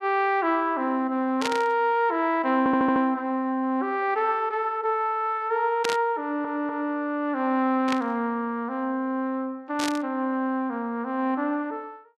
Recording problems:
burst of static; 4 times, first at 1.5 s; peak +1 dB vs average level
audio stuttering; at 2.5 s and at 6 s

